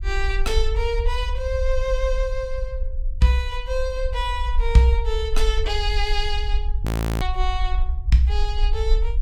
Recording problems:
low-frequency rumble; below 54 Hz, SNR 2 dB
audio freezing; at 7 s

